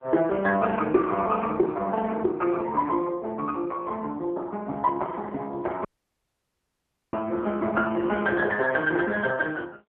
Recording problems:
telephone audio; 240 Hz to 3.1 kHz, AMR-NB
audio cutting out; at 6 s for 1.5 s

